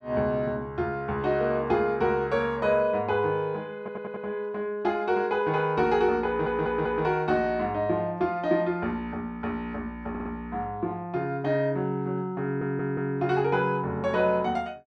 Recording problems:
stutter; 4 times, first at 4 s

